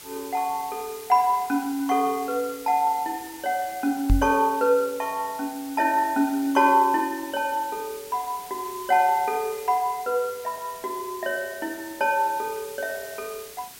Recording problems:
background hiss; slope 0 dB per octave, SNR 16 dB
knock on the microphone; at 4 s; peak +7 dB vs average level

